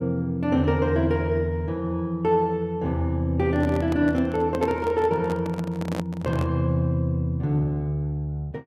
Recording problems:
handling noise; from 3.5 to 6.5 s; peak -3 dB vs average level

